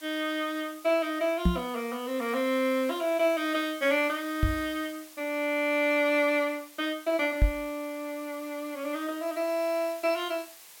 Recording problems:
background hiss; slope +1 dB per octave, SNR 19 dB
knock on the microphone; at 1.5 s, at 4.5 s and at 7.5 s; peak +8 dB vs average level

